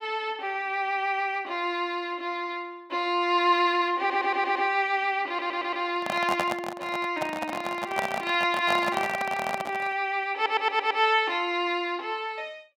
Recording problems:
audio stuttering; at 4 s, at 5.5 s and at 10 s
handling noise; from 6 to 10 s; peak +3 dB vs average level

